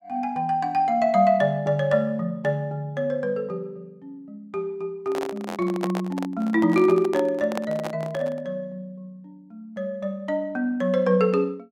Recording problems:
handling noise; from 5 to 8.5 s; peak -2 dB vs average level

